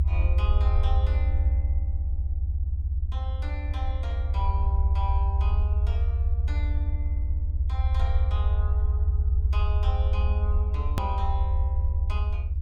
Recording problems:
hum; 50 Hz, harmonics up to 1.1 kHz, SNR 19 dB
low-frequency rumble; below 78 Hz, SNR -12 dB
hard cut with a click; at 11 s

